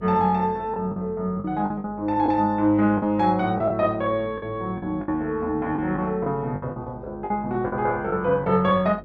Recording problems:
hum; 50 Hz, harmonics up to 550 Hz, SNR 22 dB
packet loss; 8% of the sound replaced, filled with the last packet

